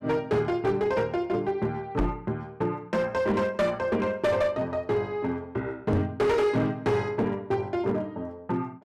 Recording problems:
distortion; hard clipping, uneven, signal-to-distortion ratio 10 dB
knock on the microphone; at 2 s and at 6 s; peak +6 dB vs average level

